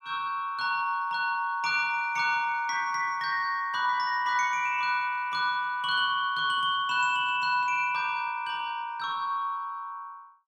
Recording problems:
none

